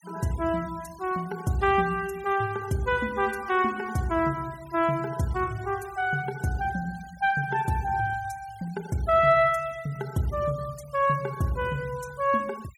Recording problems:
noise reduction artefacts; signal-to-artefact ratio 23 dB

